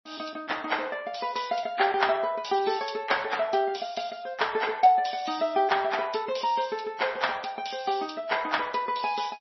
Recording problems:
lossy codec; MP3, log-spectral distance 7 dB, nothing above 5.8 kHz

